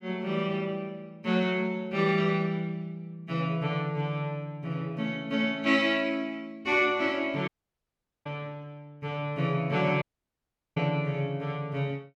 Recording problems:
dropout; at 7.5 s for 1 s and at 10 s for 0.5 s

